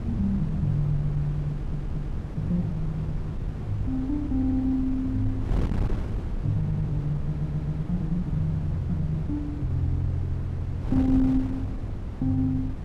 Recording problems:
wind on the microphone; below 150 Hz, SNR 5 dB
audio stuttering; 4 times, first at 1.5 s

